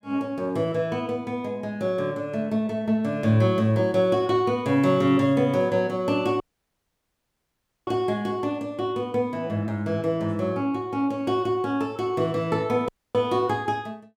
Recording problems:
dropout; at 6.5 s for 1.5 s and at 13 s

